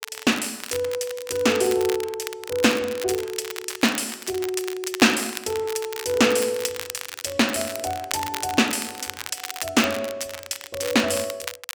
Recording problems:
crackle; vinyl, SNR 10 dB

